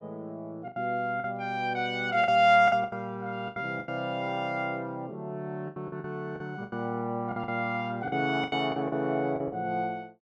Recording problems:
lost packets; 11% of the sound replaced, filled with the last packet

